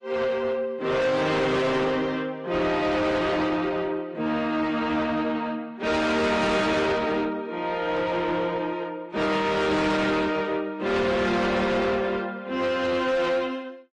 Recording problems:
lossy codec; AAC, then MP3, log-spectral distance 2 dB
distortion; soft clipping, signal-to-distortion ratio 8 dB

